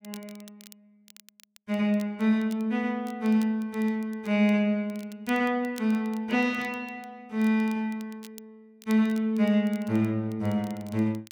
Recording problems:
crackling; vinyl, SNR 26 dB

